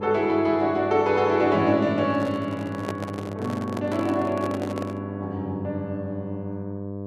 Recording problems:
mains hum; 50 Hz, harmonics up to 1.1 kHz, SNR 9 dB
microphone handling noise; from 2 to 5 s; peak -3 dB vs average level

